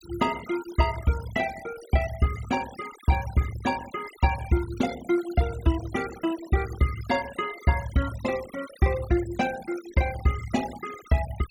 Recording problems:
noise reduction artefacts; signal-to-artefact ratio 16 dB

